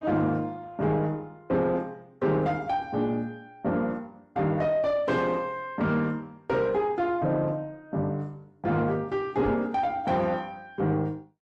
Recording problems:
lossy compression; MP3, then Opus, log-spectral distance 2 dB
distorted audio; soft clipping, signal-to-distortion ratio 10 dB
microphone thump; at 9.5 s; peak -2 dB vs average level

